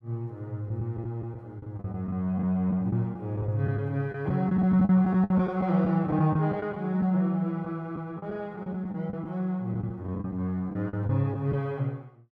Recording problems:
lost packets; 9% of the sound replaced, filled with the last packet

